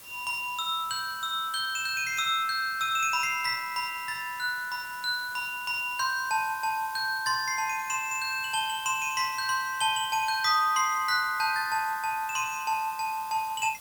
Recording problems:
hiss; slope -1 dB per octave, SNR 17 dB

